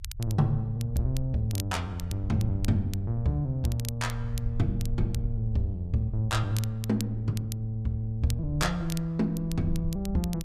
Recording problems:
low-frequency rumble; below 66 Hz, SNR 11 dB
crackle; vinyl, SNR 16 dB

